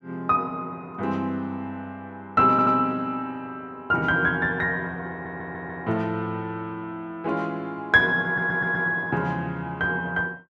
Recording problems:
audio stuttering; at 2.5 s, at 5 s and at 8.5 s

